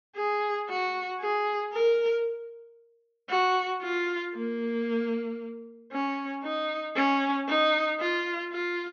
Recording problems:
low-pass filter; nothing above 6.6 kHz

